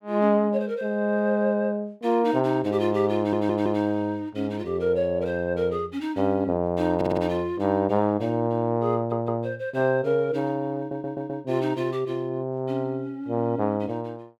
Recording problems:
stutter; 4 times, first at 3 s

